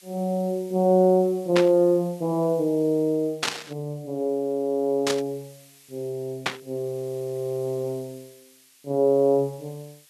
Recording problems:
background hiss; slope +4 dB per octave, SNR 27 dB
static burst; 4 times, first at 1.5 s; peak +3 dB vs average level

